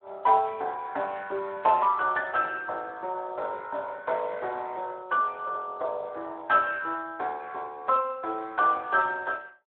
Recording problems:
phone line; 340 Hz to 3.5 kHz, Speex

